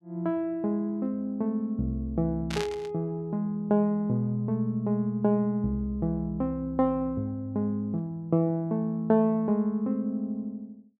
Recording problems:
burst of static; at 2.5 s; peak -3 dB vs average level

